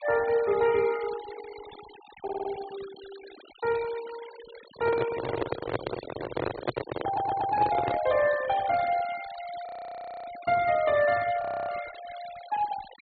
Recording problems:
treble missing; nothing above 4.4 kHz
denoising artefacts; signal-to-artefact ratio 15 dB
audio stuttering; at 2 s and at 7 s
microphone handling noise; from 4.5 to 8 s; peak +3 dB vs average level
frozen audio; at 9.5 s for 0.5 s and at 11 s

